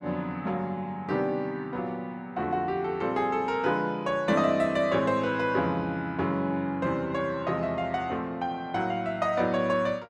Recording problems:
none

